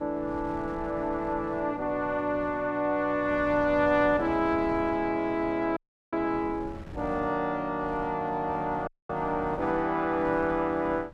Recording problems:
wind noise; below 310 Hz, SNR 18 dB
dropout; at 6 s and at 9 s

